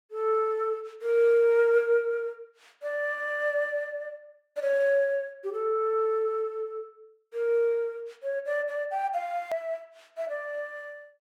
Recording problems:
edit click; at 9.5 s

